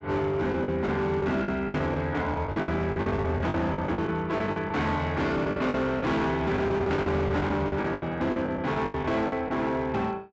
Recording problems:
treble cut off; nothing above 8 kHz
distorted audio; hard clipping, signal-to-distortion ratio 10 dB
packet loss; 15% of the sound replaced, filled with the last packet

